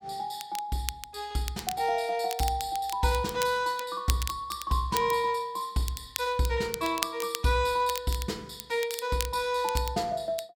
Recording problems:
crackling; vinyl, SNR 9 dB

